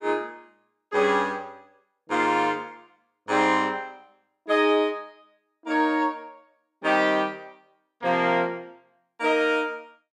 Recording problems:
none

